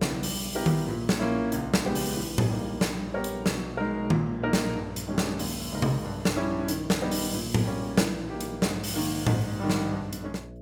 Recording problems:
hum; 60 Hz, harmonics up to 660 Hz, SNR 15 dB

